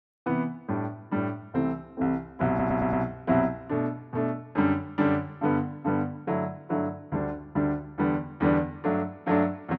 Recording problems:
stutter; at 2.5 s

